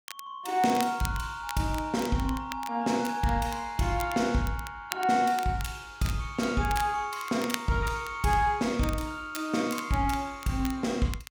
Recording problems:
crackle; vinyl, SNR 14 dB

